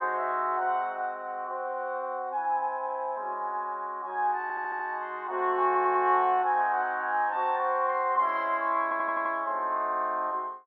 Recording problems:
audio stuttering; at 4.5 s, at 5.5 s and at 9 s

